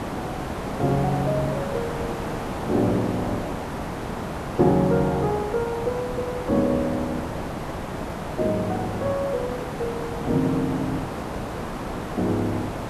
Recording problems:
hiss; SNR 5 dB

